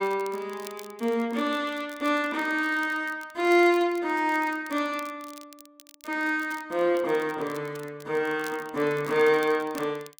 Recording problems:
crackling; vinyl, SNR 23 dB

